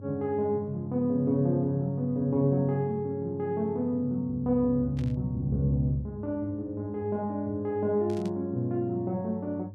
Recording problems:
hum; 50 Hz, harmonics up to 300 Hz, SNR 16 dB
static burst; at 5 s and at 8 s; peak -15 dB vs average level

